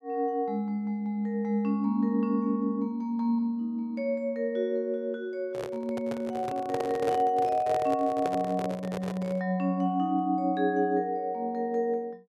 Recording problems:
microphone handling noise; from 5.5 to 9.5 s; peak -1 dB vs average level

